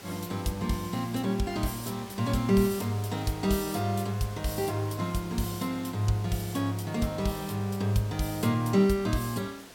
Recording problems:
hiss; slope -3 dB per octave, SNR 17 dB

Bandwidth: 17 kHz